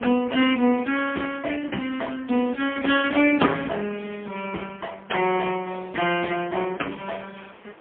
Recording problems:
phone line; 260 Hz to 3.3 kHz, AMR-NB, then MP3
wind noise; below 1.8 kHz, SNR 26 dB

